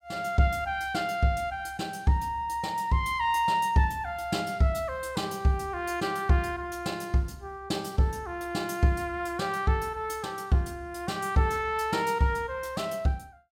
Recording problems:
none

